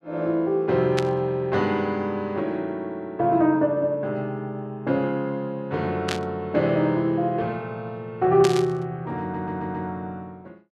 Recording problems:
burst of static; at 1 s, at 6 s and at 8.5 s; peak +1 dB vs average level
audio stuttering; at 9 s

